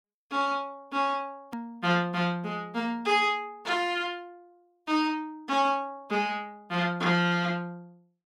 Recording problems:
click at an edit; at 1.5 s

